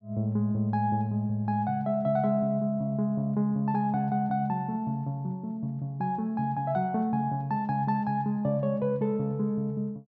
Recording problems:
none

